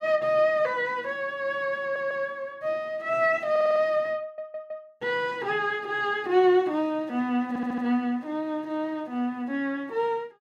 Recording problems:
stutter; 4 times, first at 2 s

